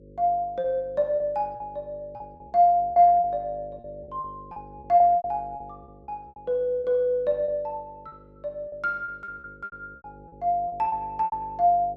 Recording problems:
hum; 50 Hz, harmonics up to 550 Hz, SNR 24 dB
packet loss; 12% of the sound replaced, filled with repeated pitch periods

